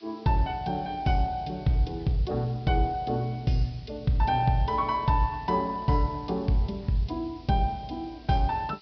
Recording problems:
treble missing; nothing above 5.5 kHz
background hiss; SNR 27 dB

